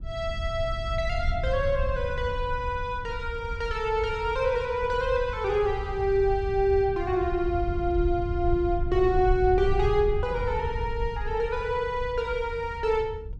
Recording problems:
wind on the microphone; below 80 Hz, SNR 7 dB

